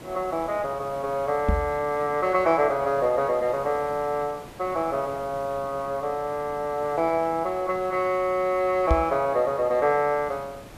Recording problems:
hiss; slope -6 dB per octave, SNR 19 dB
knock on the microphone; at 1.5 s and at 9 s; peak +5 dB vs average level

